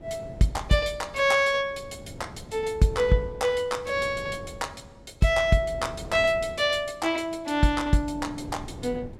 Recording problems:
wind noise; below 360 Hz, SNR 18 dB

